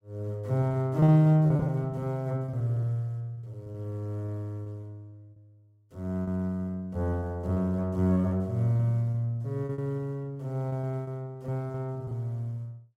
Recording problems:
packet loss; 13% of the sound replaced, filled with repeated pitch periods

